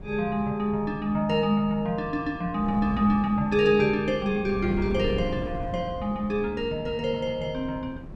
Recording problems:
wind noise; below 230 Hz, SNR 12 dB

